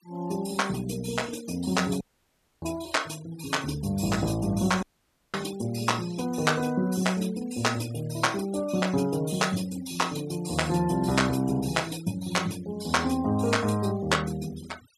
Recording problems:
noise reduction artefacts; signal-to-artefact ratio 19 dB
audio cutting out; at 2 s for 0.5 s and at 5 s for 0.5 s

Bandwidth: 14.5 kHz